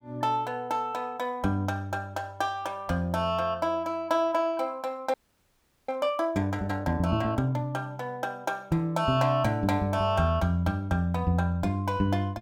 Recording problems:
frozen audio; at 5 s for 0.5 s

